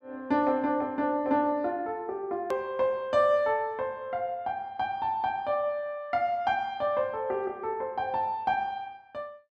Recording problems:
hard cut with a click; at 2.5 s

